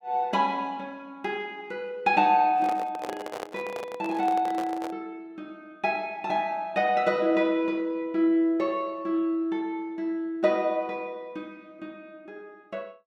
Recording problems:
handling noise; from 2.5 to 5 s; peak -5 dB vs average level

